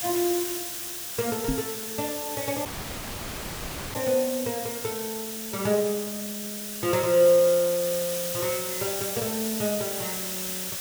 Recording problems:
hiss; slope +1 dB per octave, SNR 4 dB
microphone thump; at 1.5 s; peak +3 dB vs average level
dropout; at 2.5 s for 1.5 s

